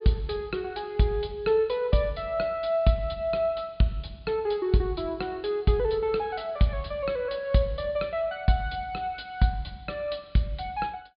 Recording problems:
treble cut off; nothing above 4.7 kHz

